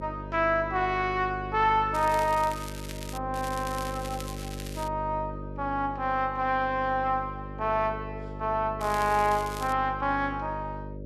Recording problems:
hum; 50 Hz, harmonics up to 600 Hz, SNR 11 dB
crackle; from 2 to 3 s, from 3.5 to 5 s and at 9 s; loose cable, SNR 15 dB

